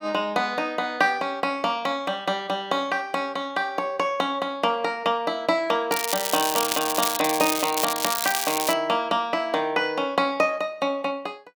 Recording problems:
crackle; from 6 to 8.5 s; loose cable, SNR 1 dB

